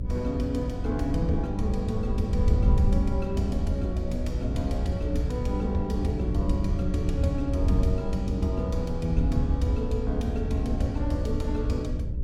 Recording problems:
electrical hum; 60 Hz, harmonics up to 540 Hz, SNR 5 dB
wind noise; below 94 Hz, SNR 0 dB

